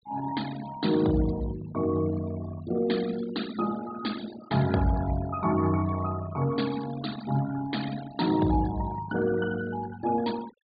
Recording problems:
low-pass filter; nothing above 4.6 kHz
denoising artefacts; signal-to-artefact ratio 14 dB

